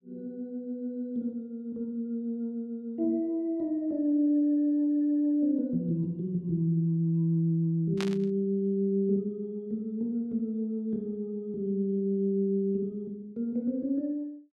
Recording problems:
static burst; at 8 s; peak -2 dB vs average level

